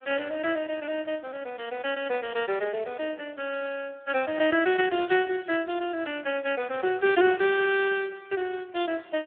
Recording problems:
telephone audio; 300 Hz to 3.5 kHz, Speex

